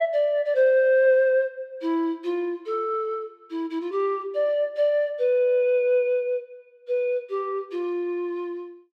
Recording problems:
none

